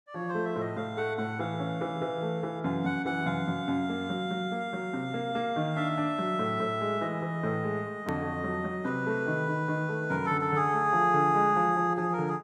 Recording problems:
hard cut with a click; at 8 s

